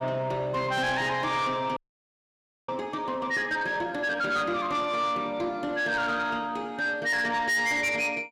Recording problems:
distortion; soft clipping, signal-to-distortion ratio 10 dB
audio freezing; at 2 s for 1 s

